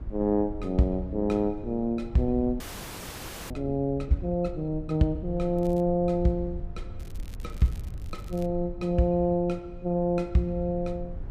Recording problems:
rumble; below 76 Hz, SNR 14 dB
frozen audio; at 2.5 s for 1 s
crackle; at 5.5 s and from 7 to 8.5 s; loose cable, SNR 27 dB

